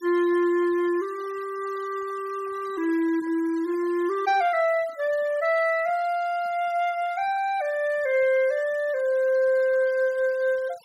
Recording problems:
noise reduction artefacts; signal-to-artefact ratio 24 dB

